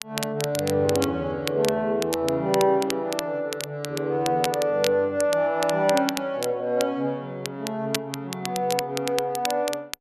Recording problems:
crackle; vinyl, SNR 9 dB

